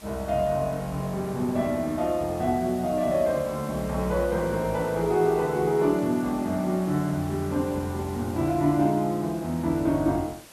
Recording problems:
background hiss; slope -2 dB per octave, SNR 20 dB

